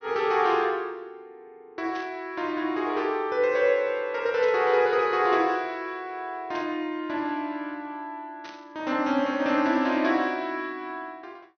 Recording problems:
treble cut off; nothing above 6.3 kHz
static burst; 4 times, first at 2 s; peak -11 dB vs average level

